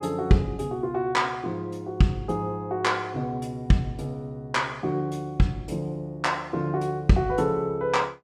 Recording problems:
none

